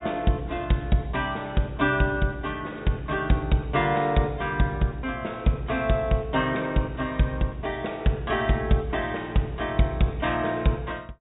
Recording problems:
treble cut off; nothing above 4 kHz

